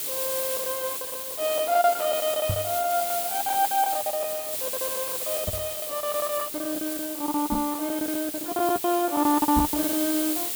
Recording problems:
background hiss; SNR 2 dB
lost packets; 18% of the sound replaced, filled with the last packet
knock on the microphone; 4 times, first at 2.5 s; peak +3 dB vs average level

